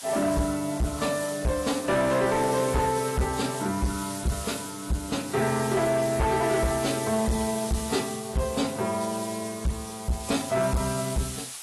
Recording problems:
lossy codec; AAC, log-spectral distance 14 dB, nothing above 12 kHz
distorted audio; hard clipping, signal-to-distortion ratio 10 dB
hiss; slope +2 dB per octave, SNR 10 dB

